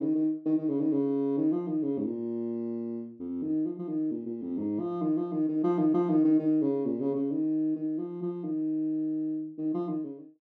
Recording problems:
none

